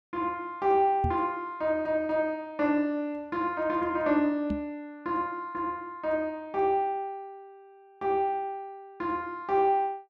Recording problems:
knock on the microphone; at 1 s and at 4.5 s; peak +2 dB vs average level

